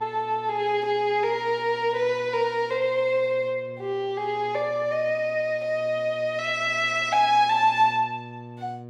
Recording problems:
hum; 60 Hz, harmonics up to 1.1 kHz, SNR 21 dB

